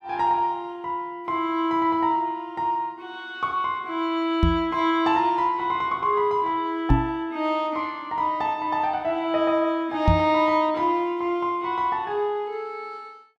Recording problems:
microphone bump; at 4.5 s, at 7 s and at 10 s; peak +8 dB vs average level

